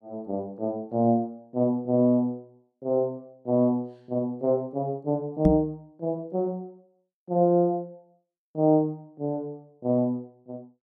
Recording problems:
microphone thump; at 5.5 s; peak +7 dB vs average level

